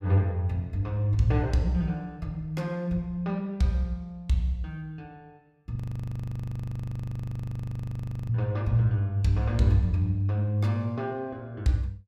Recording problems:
audio freezing; at 6 s for 2.5 s

